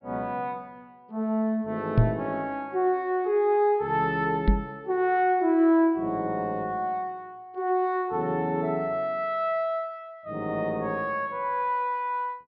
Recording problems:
treble cut off; nothing above 5.5 kHz
microphone thump; at 2 s and at 4.5 s; peak +9 dB vs average level

